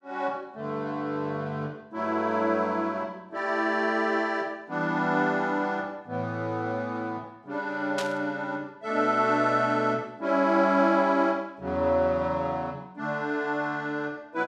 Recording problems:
static burst; at 8 s; peak -3 dB vs average level

